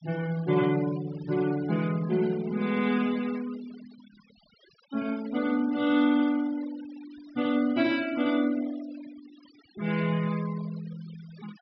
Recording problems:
low-pass filter; nothing above 5.5 kHz
noise reduction artefacts; signal-to-artefact ratio 19 dB

